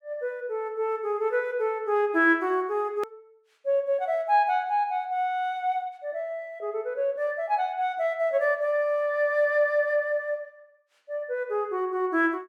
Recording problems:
edit click; at 3 s

